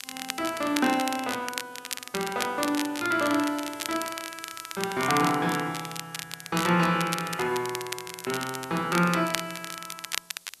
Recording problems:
hiss; SNR 23 dB
crackle; vinyl, SNR 8 dB

